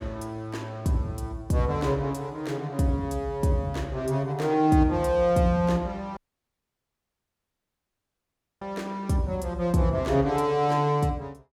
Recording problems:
audio cutting out; at 6 s for 2.5 s

